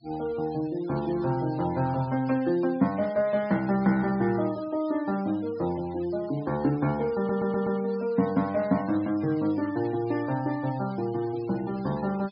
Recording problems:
low-pass filter; nothing above 5.5 kHz
noise reduction artefacts; signal-to-artefact ratio 20 dB
audio stuttering; at 7 s

